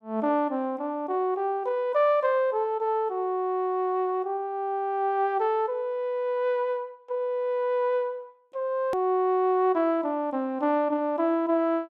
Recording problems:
click at an edit; at 9 s

